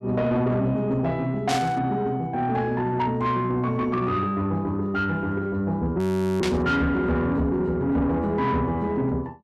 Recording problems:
distorted audio; soft clipping, signal-to-distortion ratio 11 dB
burst of static; at 1.5 s and at 6.5 s; peak -1 dB vs average level
frozen audio; at 6 s

